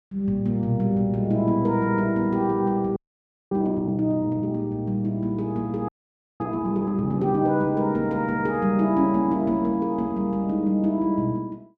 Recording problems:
audio freezing; at 3 s for 0.5 s and at 6 s for 0.5 s

